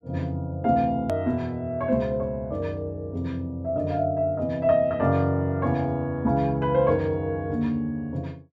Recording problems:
click at an edit; at 1 s

